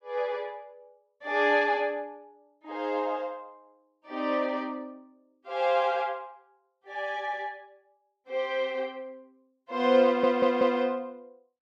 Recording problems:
stutter; at 10 s

